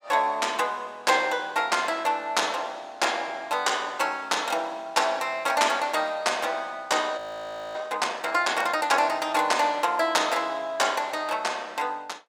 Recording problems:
audio freezing; at 7 s for 0.5 s

